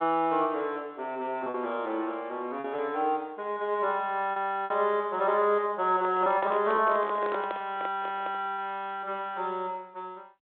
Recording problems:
telephone audio; 260 Hz to 3.7 kHz, G.726
lost packets; 4% of the sound replaced, filled with repeated pitch periods
handling noise; from 6 to 8.5 s; peak -4 dB vs average level

